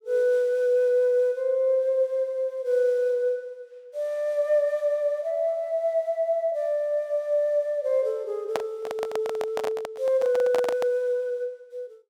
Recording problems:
microphone handling noise; from 8.5 to 11 s; peak +1 dB vs average level

